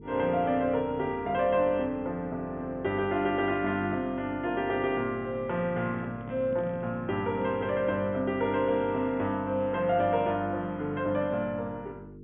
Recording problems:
treble cut off; nothing above 3.5 kHz
hum; 50 Hz, harmonics up to 450 Hz, SNR 17 dB
handling noise; from 5.5 to 7.5 s; peak -10 dB vs average level

